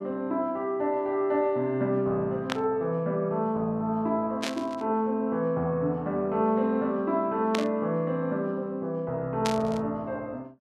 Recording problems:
static burst; 4 times, first at 2.5 s; peak +2 dB vs average level

